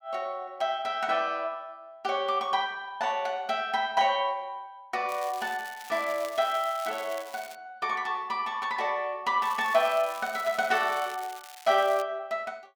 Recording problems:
crackling; from 5 to 7.5 s and from 9.5 to 12 s; loose cable, SNR 17 dB

